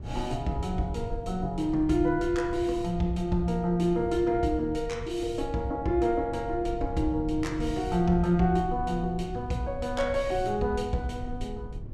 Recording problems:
rumble; below 110 Hz, SNR 11 dB

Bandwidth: 14.5 kHz